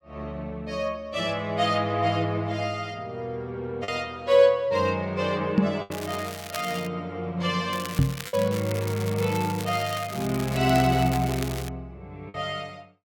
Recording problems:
packet loss; 1.7% of the sound replaced, filled with the last packet
microphone bump; at 5.5 s and at 8 s; peak +9 dB vs average level
crackling; at 6 s and from 7.5 to 12 s; loose cable, SNR 12 dB

